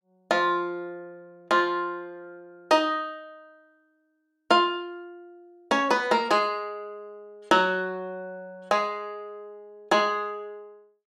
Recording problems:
none

